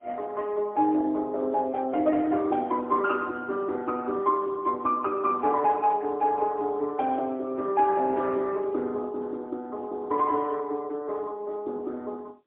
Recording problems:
phone line; 280 Hz to 3.2 kHz, AMR-NB, then MP3

